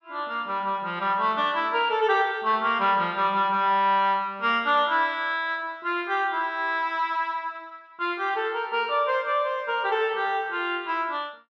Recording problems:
none

